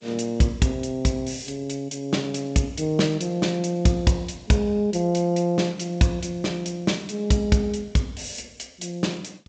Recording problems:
lossy codec; G.722, log-spectral distance 4 dB, nothing above 7.6 kHz

